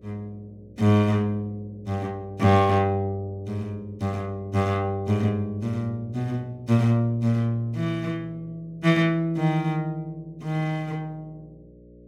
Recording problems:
hum; 60 Hz, harmonics up to 600 Hz, SNR 26 dB

